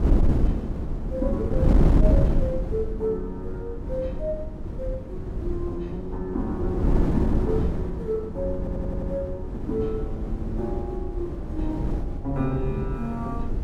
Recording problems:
wind on the microphone; below 170 Hz, SNR -3 dB
audio stuttering; at 8.5 s

